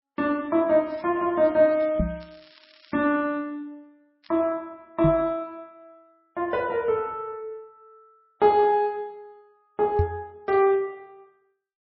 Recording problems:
lossy codec; MP3, log-spectral distance 3 dB, nothing above 4.2 kHz
crackling; from 1 to 3 s, at 4 s and at 10 s; loose cable, SNR 28 dB
knock on the microphone; at 2 s, at 5 s and at 10 s; peak +4 dB vs average level

